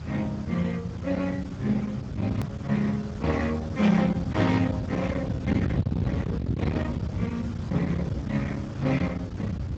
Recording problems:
codec artefacts; Speex, log-spectral distance 3 dB, nothing above 18.3 kHz
distortion; hard clipping, uneven, signal-to-distortion ratio 6 dB
hiss; SNR 20 dB
low-frequency rumble; below 240 Hz, SNR 5 dB
hard cut with a click; at 2.5 s

